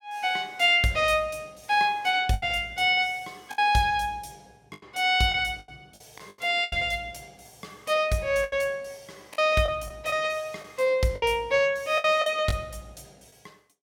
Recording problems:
packet loss; 7% of the sound replaced, filled with the last packet

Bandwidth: 17 kHz